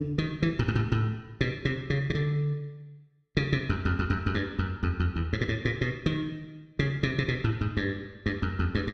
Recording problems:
none

